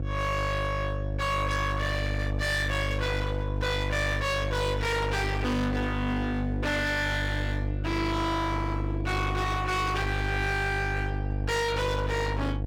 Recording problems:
distorted audio; hard clipping, signal-to-distortion ratio 5 dB
electrical hum; 50 Hz, harmonics up to 2.4 kHz, SNR 2 dB

